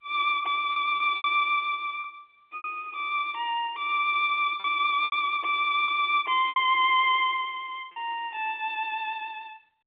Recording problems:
phone line; 280 Hz to 3.7 kHz, G.711
packet loss; 6% of the sound replaced, filled with repeated pitch periods

